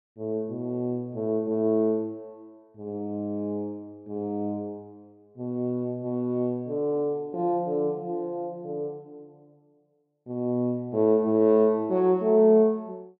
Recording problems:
none

